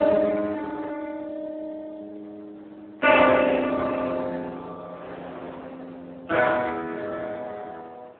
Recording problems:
telephone audio; 280 Hz to 2 kHz, Speex
wind noise; below 1.1 kHz, SNR 23 dB

